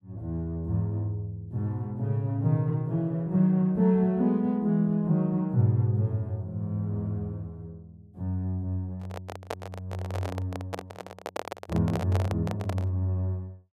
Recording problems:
handling noise; from 9 to 13 s; peak -1 dB vs average level

